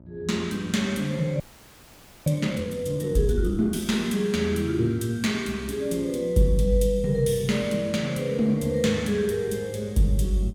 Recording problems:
hum; 60 Hz, harmonics up to 960 Hz, SNR 25 dB
audio freezing; at 1.5 s for 1 s

